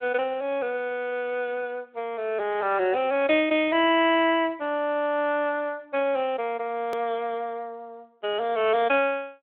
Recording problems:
telephone audio; 280 Hz to 3.5 kHz, Speex
hard cut with a click; at 7 s

